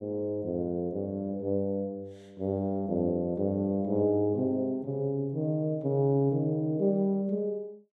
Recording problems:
none

